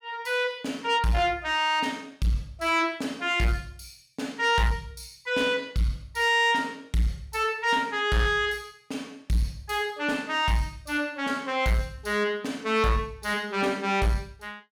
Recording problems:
distorted audio; soft clipping, signal-to-distortion ratio 11 dB

